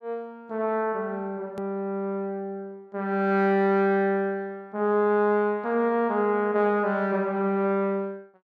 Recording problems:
hard cut with a click; at 1.5 s

